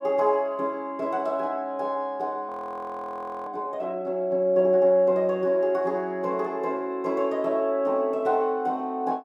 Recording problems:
audio freezing; at 2.5 s for 1 s

